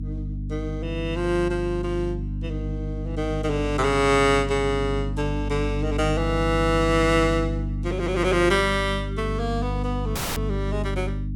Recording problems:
electrical hum; 50 Hz, harmonics up to 300 Hz, SNR 5 dB
dropout; at 10 s

